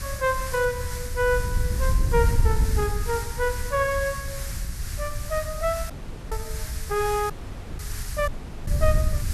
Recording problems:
background hiss; SNR 10 dB
wind noise; below 86 Hz, SNR 2 dB
audio cutting out; at 6 s, at 7.5 s and at 8.5 s

